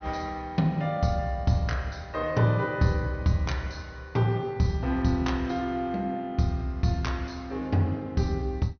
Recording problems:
treble missing; nothing above 6.1 kHz

